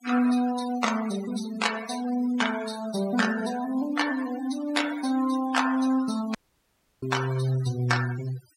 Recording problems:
denoising artefacts; signal-to-artefact ratio 12 dB
audio cutting out; at 6.5 s for 0.5 s

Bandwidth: 16 kHz